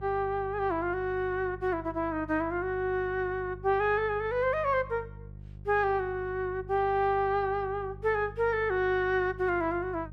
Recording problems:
electrical hum; 50 Hz, harmonics up to 500 Hz, SNR 17 dB

